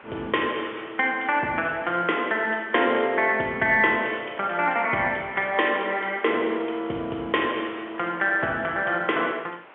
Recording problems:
telephone audio; 280 Hz to 3.3 kHz, G.711
hiss; SNR 22 dB

